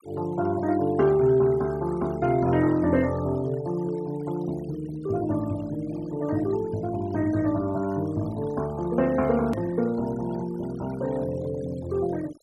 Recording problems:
denoising artefacts; signal-to-artefact ratio 21 dB
hard cut with a click; at 9.5 s

